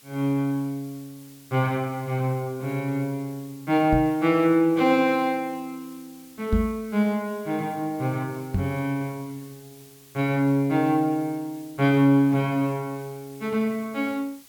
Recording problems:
hiss; slope +1 dB per octave, SNR 25 dB
microphone bump; at 4 s, at 6.5 s and at 8.5 s; peak +3 dB vs average level

